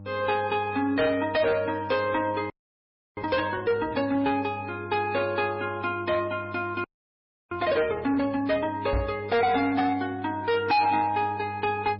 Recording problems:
codec artefacts; MP3, log-spectral distance 2 dB, nothing above 4.6 kHz
distorted audio; hard clipping, signal-to-distortion ratio 10 dB
hum; 50 Hz, harmonics up to 800 Hz, SNR 17 dB
audio freezing; at 2.5 s for 0.5 s and at 7 s for 0.5 s
knock on the microphone; at 9 s; peak +2 dB vs average level

